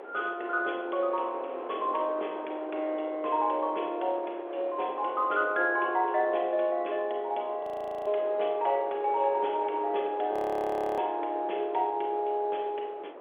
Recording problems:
phone line; 320 Hz to 3.6 kHz, G.711
wind noise; below 810 Hz, SNR 12 dB
audio freezing; at 7.5 s and at 10 s for 0.5 s

